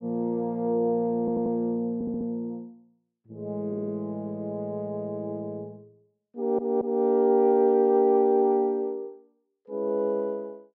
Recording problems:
stutter; 4 times, first at 1 s

